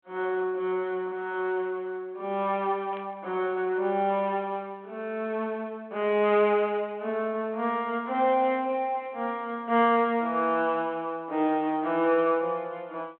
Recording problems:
telephone audio; 280 Hz to 4 kHz, G.726
burst of static; at 3 s; peak -16 dB vs average level

